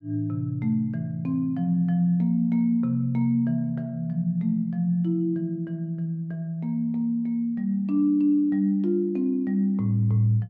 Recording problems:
none

